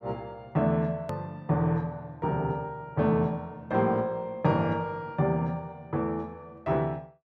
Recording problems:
click at an edit; at 1 s

